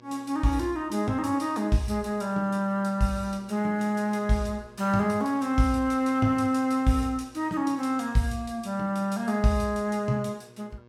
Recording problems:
electrical hum; 60 Hz, harmonics up to 2.2 kHz, SNR 26 dB

